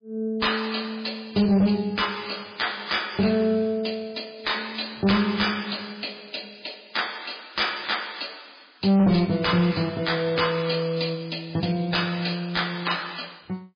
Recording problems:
lossy compression; MP3, log-spectral distance 13 dB
distortion; hard clipping, signal-to-distortion ratio 9 dB

